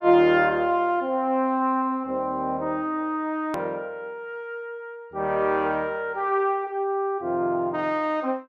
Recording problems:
hard cut with a click; at 3.5 s

